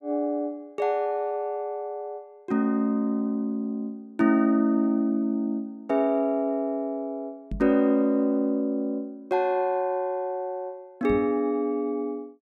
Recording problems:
microphone thump; at 7.5 s and at 11 s; peak -3 dB vs average level

